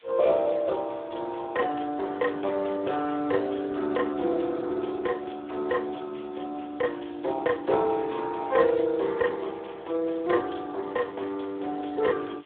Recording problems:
telephone audio; 300 Hz to 2.9 kHz, Speex
background hiss; SNR 27 dB

